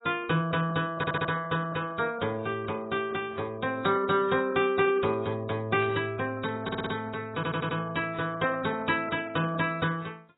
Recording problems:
lossy codec; AAC, log-spectral distance 4 dB, nothing above 3.8 kHz
audio stuttering; at 1 s, at 6.5 s and at 7.5 s
static burst; at 6 s; peak -10 dB vs average level

